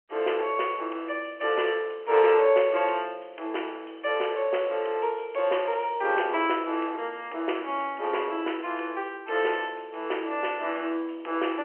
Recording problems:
phone line; 280 Hz to 3.2 kHz, G.711

